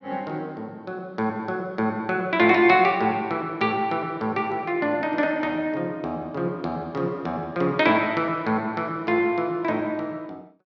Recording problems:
none

